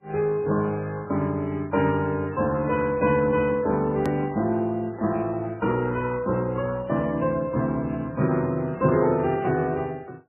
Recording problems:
lossy compression; MP3, then Vorbis, log-spectral distance 2 dB, nothing above 2.5 kHz
hard cut with a click; at 4 s

